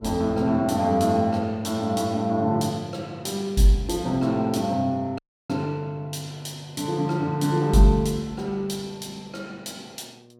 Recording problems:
mains hum; 60 Hz, harmonics up to 1.1 kHz, SNR 29 dB
audio cutting out; at 5 s

